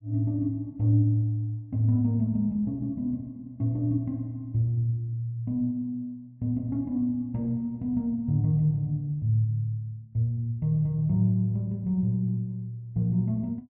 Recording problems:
low-pass filter; nothing above 5.5 kHz

